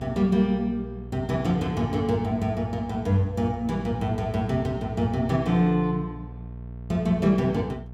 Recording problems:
mains hum; 60 Hz, harmonics up to 660 Hz, SNR 14 dB

